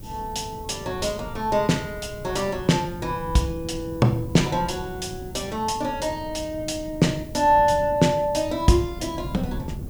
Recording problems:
background hiss; slope +5 dB per octave, SNR 25 dB
wind on the microphone; below 190 Hz, SNR 14 dB

